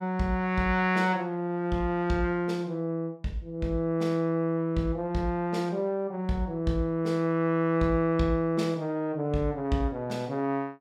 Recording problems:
none

